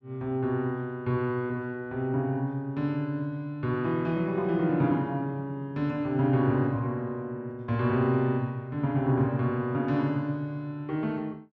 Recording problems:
none

